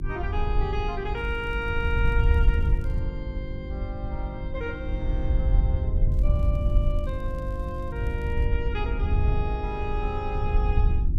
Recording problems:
mains hum; 50 Hz, harmonics up to 350 Hz, SNR 4 dB
wind noise; below 76 Hz, SNR -6 dB
crackling; from 1 to 3 s and from 6 to 8.5 s; loose cable, SNR 27 dB

